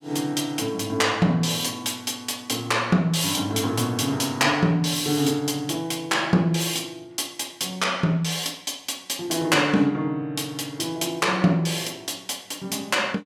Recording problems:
none

